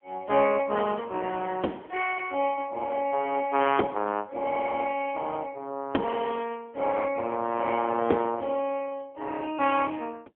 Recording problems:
telephone audio; 260 Hz to 3.3 kHz, AMR-NB

